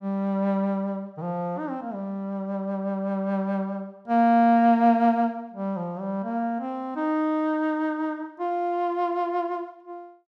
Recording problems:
none

